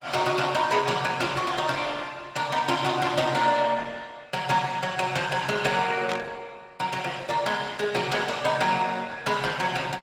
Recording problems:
codec artefacts; Opus, log-spectral distance 4 dB, nothing above 19 kHz
burst of static; at 6 s; peak -2 dB vs average level

